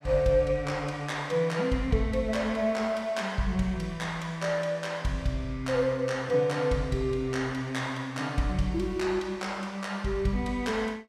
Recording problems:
none

